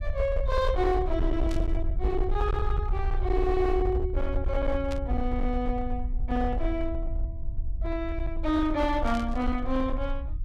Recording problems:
distorted audio; hard clipping, uneven, signal-to-distortion ratio 12 dB
low-frequency rumble; below 62 Hz, SNR 2 dB
static burst; at 1.5 s, at 5 s and at 9 s; peak -8 dB vs average level

